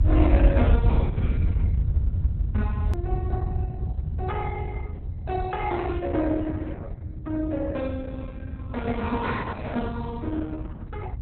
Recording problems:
codec artefacts; Opus, log-spectral distance 2 dB, nothing above 4 kHz
low-frequency rumble; below 88 Hz, SNR -3 dB
hard cut with a click; at 3 s

